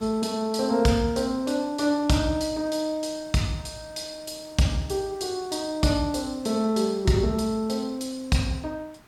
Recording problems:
background hiss; slope -5 dB per octave, SNR 27 dB

